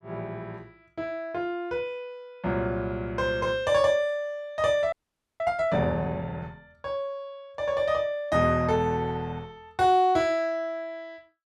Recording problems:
audio freezing; at 5 s

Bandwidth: 12.5 kHz